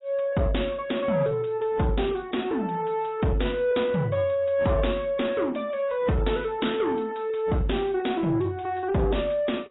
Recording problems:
lossy codec; AAC, log-spectral distance 5 dB, nothing above 3.8 kHz
distortion; soft clipping, signal-to-distortion ratio 11 dB

